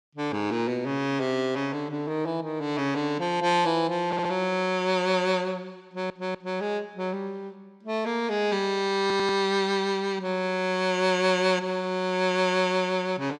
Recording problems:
stutter; at 4 s, at 6 s and at 9 s

